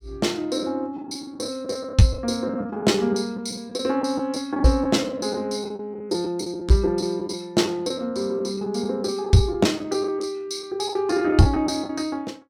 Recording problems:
packet loss; 10% of the sound replaced, filled with the last packet

